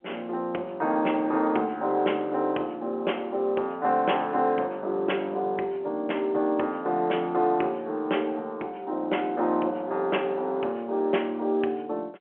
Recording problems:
phone line; 280 Hz to 3.2 kHz, G.711

